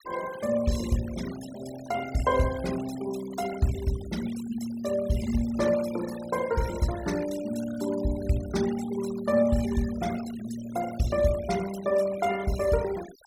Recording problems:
denoising artefacts; signal-to-artefact ratio 15 dB

